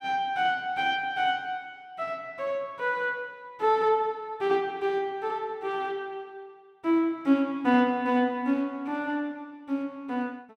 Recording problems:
none

